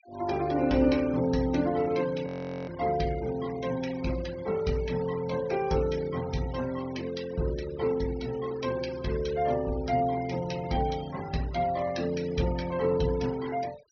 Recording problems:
treble missing; nothing above 6.2 kHz
noise reduction artefacts; signal-to-artefact ratio 17 dB
frozen audio; at 2.5 s

